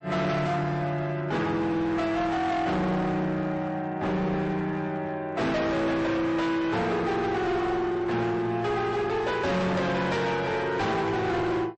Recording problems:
lossy codec; MP3, log-spectral distance 2 dB, nothing above 8.2 kHz
distortion; hard clipping, signal-to-distortion ratio 7 dB

